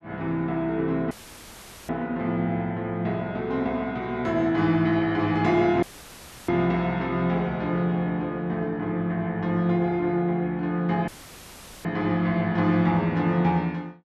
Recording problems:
dropout; at 1 s for 1 s, at 6 s for 0.5 s and at 11 s for 1 s; filled with static

